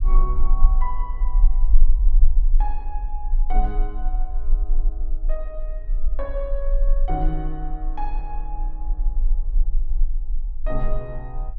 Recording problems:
rumble; below 34 Hz, strongest tone 18 Hz, SNR -9 dB

